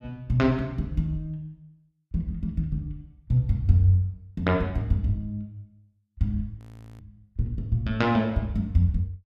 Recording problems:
frozen audio; at 6.5 s

